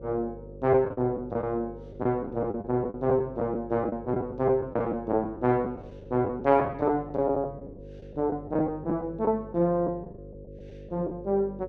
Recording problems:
electrical hum; 50 Hz, harmonics up to 600 Hz, SNR 16 dB
packet loss; 9% of the sound replaced, filled with the last packet

